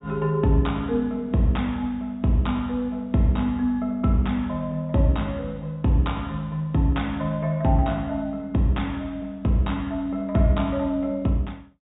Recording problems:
treble cut off; nothing above 4 kHz

